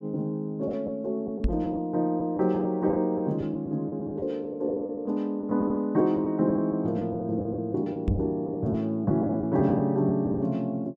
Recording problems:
lost packets; 9% of the sound replaced, filled with the last packet
knock on the microphone; at 1.5 s and at 8 s; peak +4 dB vs average level

